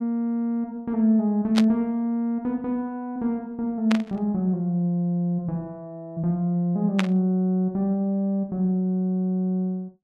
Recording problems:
static burst; at 1.5 s, at 4 s and at 7 s; peak +2 dB vs average level

